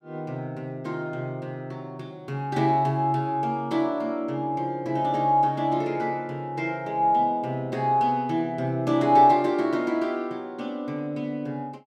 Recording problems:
none

